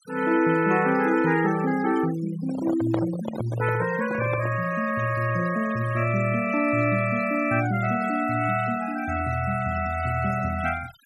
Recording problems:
noise reduction artefacts; signal-to-artefact ratio 15 dB
microphone handling noise; from 2.5 to 4.5 s; peak -1 dB vs average level

